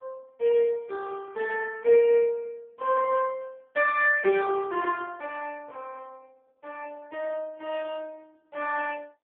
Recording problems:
phone line; 320 Hz to 3.1 kHz, AMR-NB

